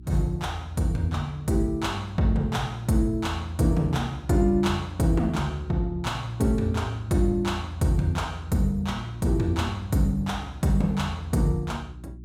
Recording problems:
electrical hum; 60 Hz, harmonics up to 360 Hz, SNR 18 dB

